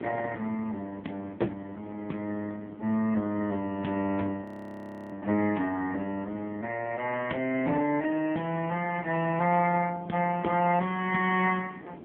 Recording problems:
telephone audio; 170 Hz to 3.3 kHz, AMR-NB
wind on the microphone; below 440 Hz, SNR 17 dB
frozen audio; at 4.5 s for 0.5 s

